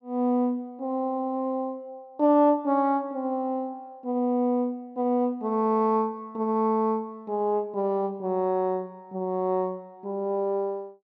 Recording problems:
none

